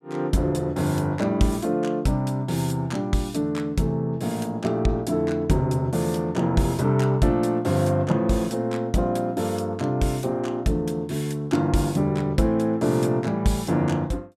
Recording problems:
none

